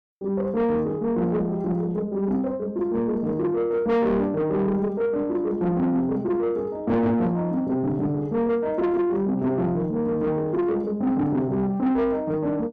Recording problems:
distorted audio; soft clipping, signal-to-distortion ratio 11 dB

